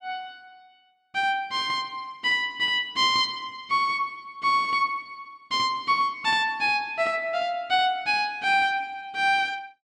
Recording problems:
none

